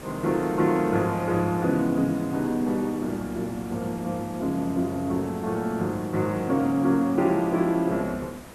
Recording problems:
hiss; slope -6 dB per octave, SNR 17 dB

